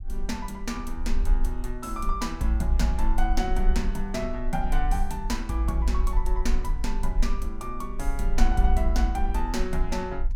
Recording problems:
rumble; below 40 Hz, strongest tone 22 Hz, SNR 1 dB

